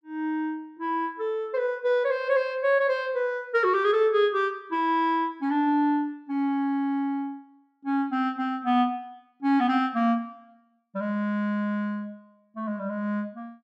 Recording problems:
none

